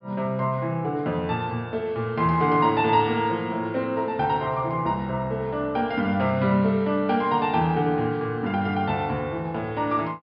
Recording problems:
low-pass filter; nothing above 5.5 kHz

